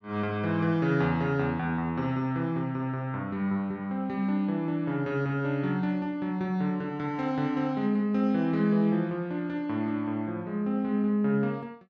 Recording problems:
none

